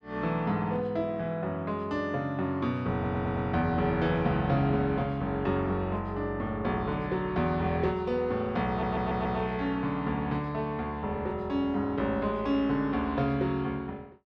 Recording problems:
audio stuttering; at 3 s and at 8.5 s

